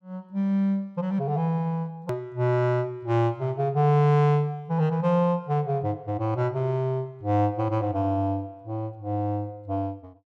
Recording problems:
click at an edit; at 2 s

